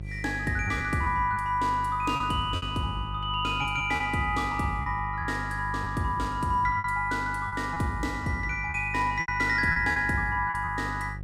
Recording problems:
hum; 50 Hz, harmonics up to 550 Hz, SNR 11 dB
packet loss; 7% of the sound replaced, filled with repeated pitch periods

